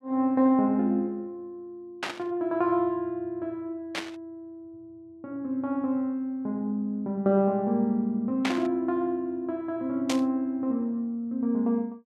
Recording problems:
static burst; 4 times, first at 2 s; peak +2 dB vs average level

